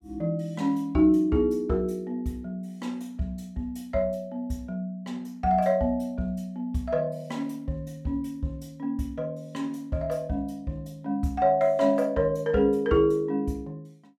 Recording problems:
none

